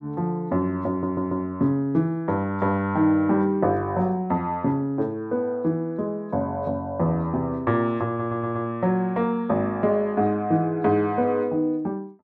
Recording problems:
stutter; at 1 s and at 8 s

